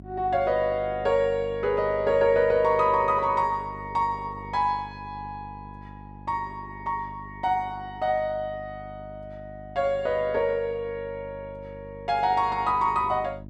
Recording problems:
electrical hum; 50 Hz, harmonics up to 650 Hz, SNR 18 dB

